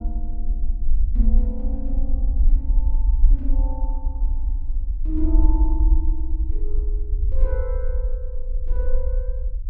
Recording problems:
low-frequency rumble; below 48 Hz, SNR -11 dB

